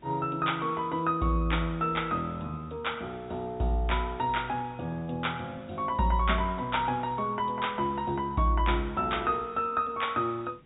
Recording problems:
treble missing; nothing above 4 kHz
hiss; SNR 29 dB

